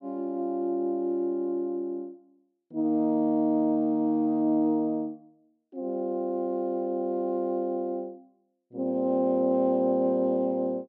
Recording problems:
none

